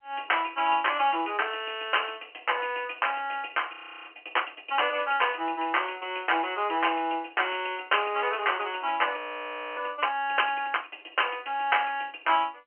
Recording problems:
phone line; 280 Hz to 3.1 kHz, G.711
audio freezing; at 3.5 s and at 9 s for 0.5 s

